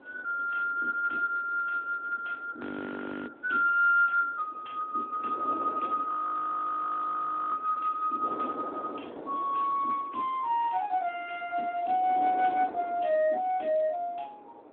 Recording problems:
telephone audio; 240 Hz to 3.5 kHz, Speex
wind noise; below 720 Hz, SNR 16 dB
audio freezing; at 2.5 s for 0.5 s and at 6 s for 1.5 s

